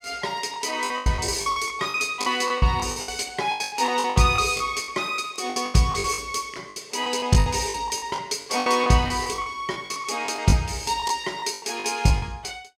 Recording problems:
lost packets; 18% of the sound replaced, filled with the last packet

